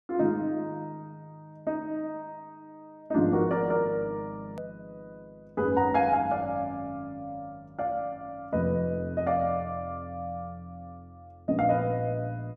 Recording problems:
hard cut with a click; at 4.5 s

